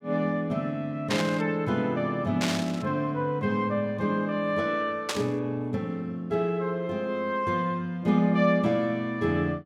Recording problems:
static burst; at 1 s, at 2.5 s and at 5 s; peak +2 dB vs average level

